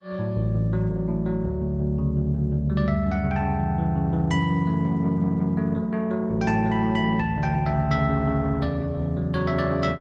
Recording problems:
lossy codec; Opus, log-spectral distance 2 dB, nothing above 12 kHz

